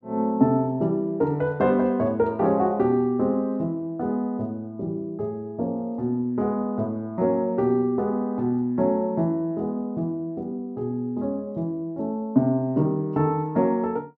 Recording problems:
none

